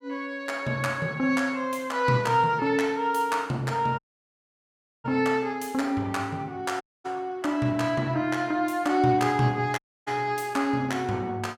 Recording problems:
dropout; at 4 s for 1 s, at 7 s and at 10 s

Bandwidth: 17 kHz